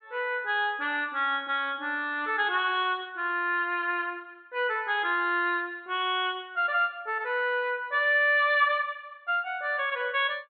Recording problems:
low-pass filter; nothing above 4.2 kHz

